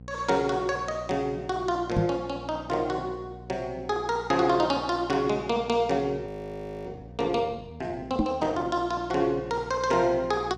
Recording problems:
hum; 60 Hz, harmonics up to 540 Hz, SNR 18 dB
microphone bump; at 2 s and at 8 s; peak +5 dB vs average level
frozen audio; at 6.5 s for 0.5 s

